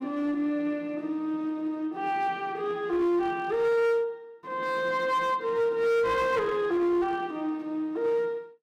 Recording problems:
distortion; hard clipping, uneven, signal-to-distortion ratio 11 dB

